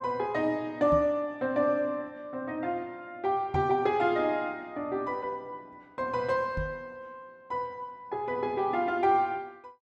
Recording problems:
knock on the microphone; at 1 s, at 3.5 s and at 6.5 s; peak -1 dB vs average level

